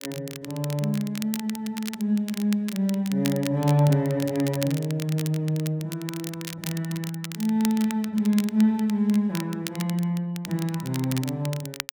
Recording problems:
crackle; vinyl, SNR 13 dB

